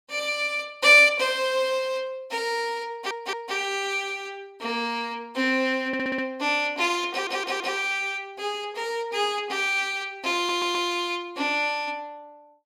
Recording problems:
audio stuttering; 4 times, first at 3 s

